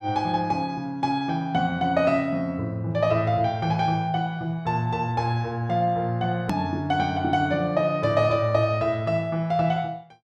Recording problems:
edit click; at 6.5 s

